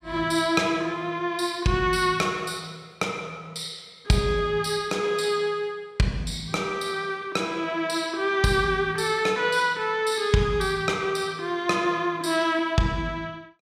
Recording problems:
none

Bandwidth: 15 kHz